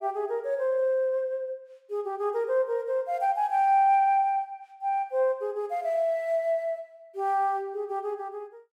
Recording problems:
none

